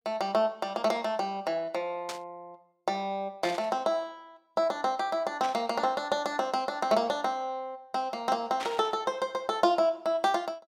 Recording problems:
static burst; 4 times, first at 2 s; peak -4 dB vs average level

